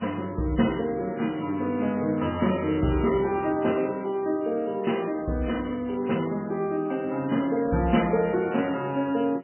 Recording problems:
codec artefacts; MP3, log-spectral distance 5 dB, nothing above 2.4 kHz

